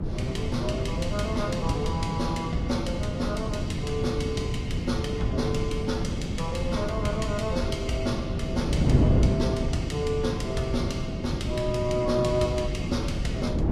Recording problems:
codec artefacts; Vorbis, log-spectral distance 2 dB
wind noise; below 230 Hz, SNR 0 dB

